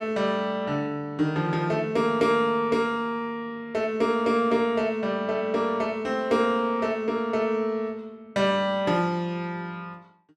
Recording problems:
none

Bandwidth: 13.5 kHz